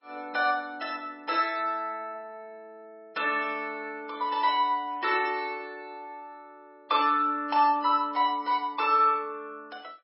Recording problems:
lossy codec; MP3, log-spectral distance 2 dB, nothing above 5.3 kHz

